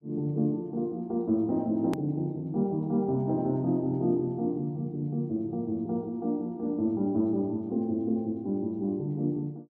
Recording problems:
hard cut with a click; at 2 s

